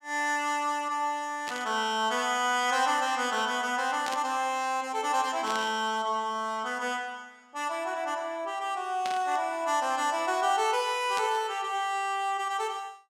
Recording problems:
burst of static; 5 times, first at 1.5 s; peak -3 dB vs average level

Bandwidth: 16 kHz